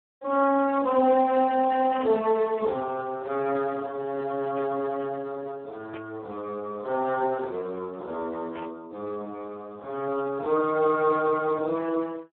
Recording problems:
phone line; 280 Hz to 2.2 kHz, Speex
burst of static; 4 times, first at 2 s; peak -13 dB vs average level

